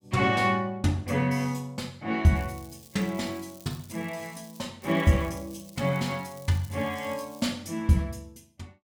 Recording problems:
crackle; from 2.5 to 4.5 s and from 5 to 7.5 s; loose cable, SNR 22 dB

